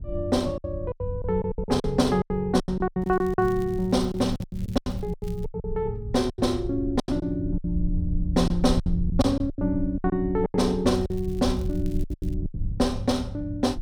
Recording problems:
rumble; below 80 Hz, SNR 9 dB
lost packets; 14% of the sound replaced, filled with silence
crackling; from 3 to 5.5 s and from 11 to 12 s; loose cable, SNR 28 dB

